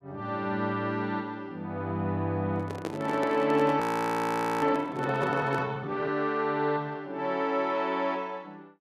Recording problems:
handling noise; from 2.5 to 5.5 s; peak -1 dB vs average level
frozen audio; at 4 s for 1 s

